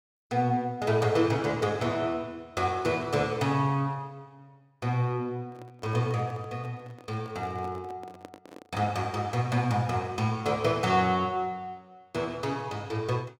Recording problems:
handling noise; from 5.5 to 9 s; peak -11 dB vs average level

